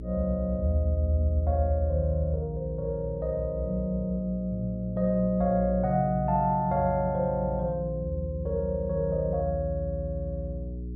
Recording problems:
hum; 60 Hz, harmonics up to 420 Hz, SNR 10 dB

